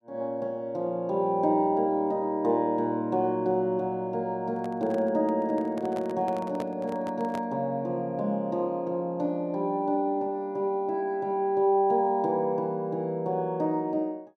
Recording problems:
microphone handling noise; from 4.5 to 7.5 s; peak -7 dB vs average level

